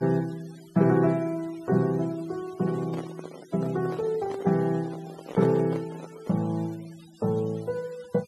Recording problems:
denoising artefacts; signal-to-artefact ratio 23 dB
handling noise; from 2.5 to 6.5 s; peak -6 dB vs average level

